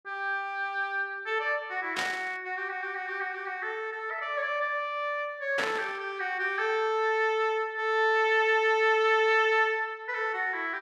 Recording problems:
burst of static; at 2 s and at 5.5 s; peak 0 dB vs average level

